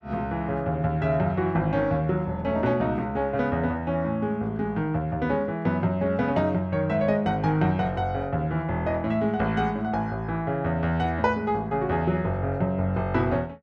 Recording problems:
none

